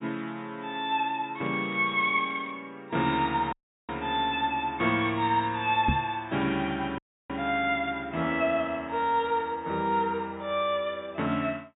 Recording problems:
low-pass filter; nothing above 4 kHz
crackling; from 1.5 to 2.5 s; loose cable, SNR 25 dB
dropout; at 3.5 s and at 7 s
microphone bump; at 6 s; peak +5 dB vs average level

